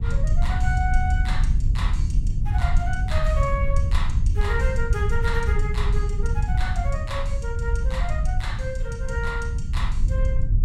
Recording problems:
low-frequency rumble; below 76 Hz, SNR -5 dB

